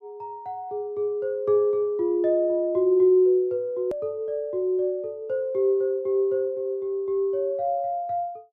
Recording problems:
hard cut with a click; at 4 s

